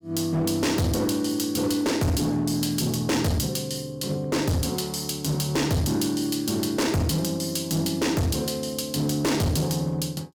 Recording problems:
distortion; hard clipping, signal-to-distortion ratio 6 dB

